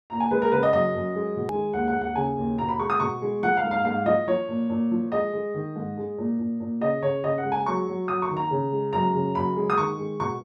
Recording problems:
click at an edit; at 1.5 s

